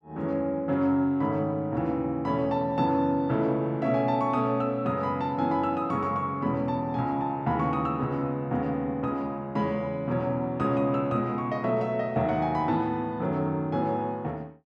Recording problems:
none

